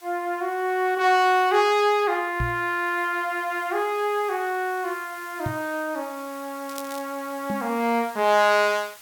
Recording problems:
hiss; SNR 22 dB
knock on the microphone; at 2.5 s, at 5.5 s and at 7.5 s; peak -1 dB vs average level
crackling; at 6.5 s; loose cable, SNR 18 dB

